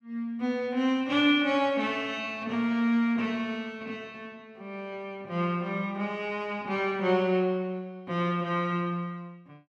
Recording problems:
none

